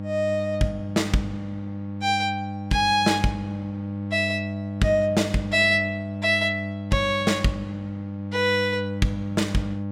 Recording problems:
electrical hum; 50 Hz, harmonics up to 900 Hz, SNR 8 dB

